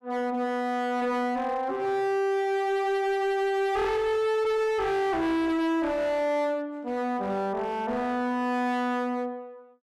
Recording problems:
distorted audio; hard clipping, signal-to-distortion ratio 7 dB

